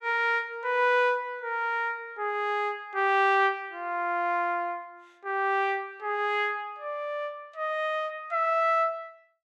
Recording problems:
none

